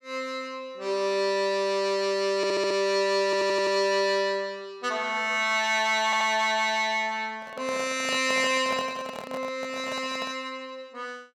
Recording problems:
audio stuttering; at 2.5 s, at 3.5 s and at 6 s
handling noise; from 7.5 to 10 s; peak -5 dB vs average level

